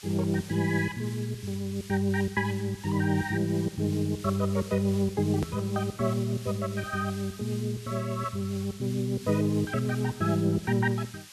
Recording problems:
hiss; slope +4 dB per octave, SNR 17 dB
edit click; at 5.5 s

